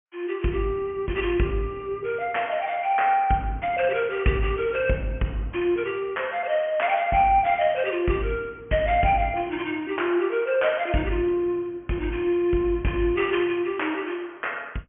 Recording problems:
treble cut off; nothing above 3 kHz

